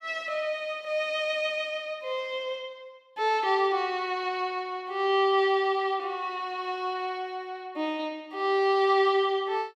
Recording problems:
none

